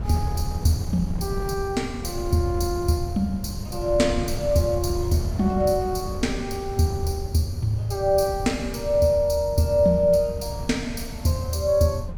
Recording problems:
wind on the microphone; below 130 Hz, SNR 9 dB

